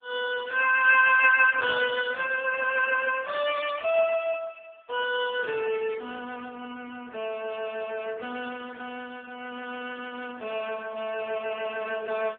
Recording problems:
telephone audio; 280 Hz to 3.1 kHz, AMR-NB

